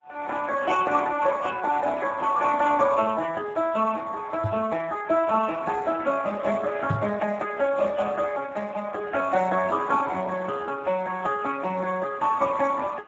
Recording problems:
codec artefacts; MP3, then Speex, log-spectral distance 5 dB
microphone thump; at 4.5 s and at 7 s; peak -1 dB vs average level

